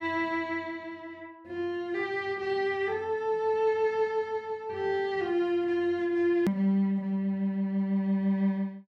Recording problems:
click at an edit; at 6.5 s

